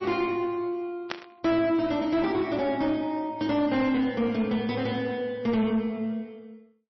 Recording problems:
codec artefacts; MP3, log-spectral distance 2 dB, nothing above 5.7 kHz
distortion; soft clipping, signal-to-distortion ratio 10 dB
burst of static; at 1 s; peak -1 dB vs average level

